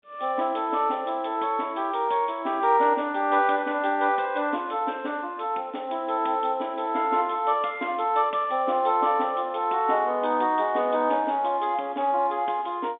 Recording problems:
telephone audio; 220 Hz to 3.7 kHz, G.711

